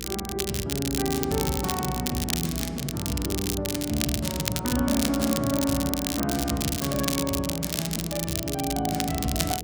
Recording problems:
hum; 60 Hz, harmonics up to 480 Hz, SNR 12 dB
crackle; vinyl, SNR 2 dB

